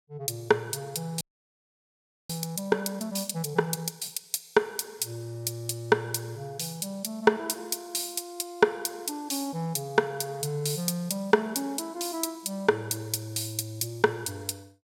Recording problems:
audio freezing; at 1 s for 1 s

